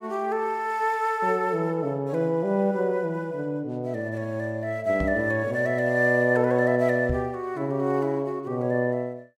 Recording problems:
microphone thump; at 5 s and at 7 s; peak -1 dB vs average level

